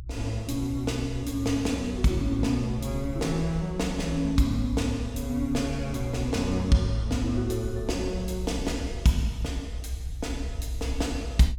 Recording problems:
rumble; below 68 Hz, SNR 8 dB

